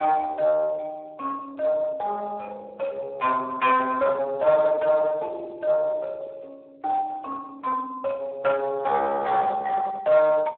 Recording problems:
phone line; 340 Hz to 2.3 kHz, Speex
distorted audio; soft clipping, signal-to-distortion ratio 9 dB

